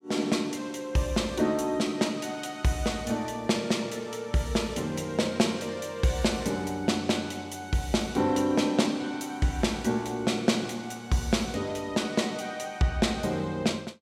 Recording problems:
none

